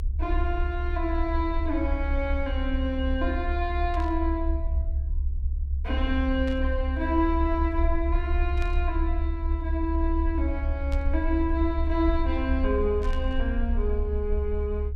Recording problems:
rumble; below 70 Hz, SNR -1 dB
static burst; 5 times, first at 4 s; peak -10 dB vs average level

